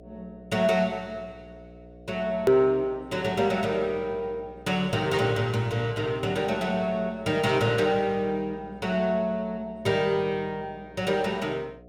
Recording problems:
electrical hum; 60 Hz, harmonics up to 720 Hz, SNR 22 dB
hard cut with a click; at 2.5 s

